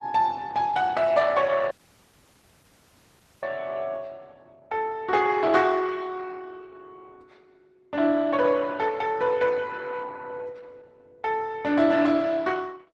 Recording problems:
lossy codec; Opus, log-spectral distance 4 dB
audio cutting out; at 1.5 s for 1.5 s

